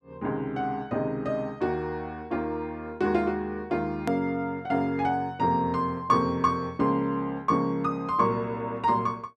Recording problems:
click at an edit; at 4 s

